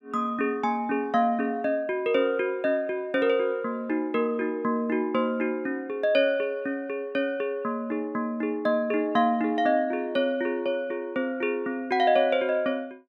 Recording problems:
none

